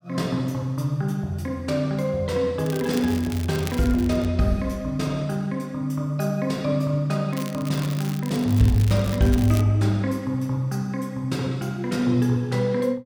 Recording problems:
crackle; from 2.5 to 4.5 s and from 7.5 to 9.5 s; loose cable, SNR 16 dB

